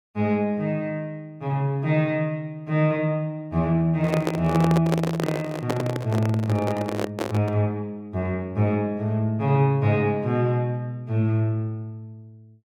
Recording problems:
microphone handling noise; from 4 to 7.5 s; peak +3 dB vs average level

